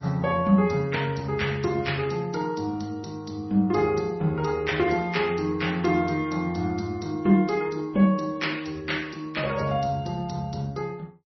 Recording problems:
codec artefacts; MP3, then Vorbis, log-spectral distance 4 dB, nothing above 5.8 kHz

